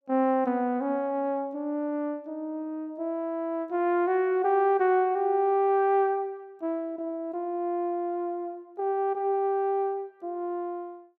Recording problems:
none

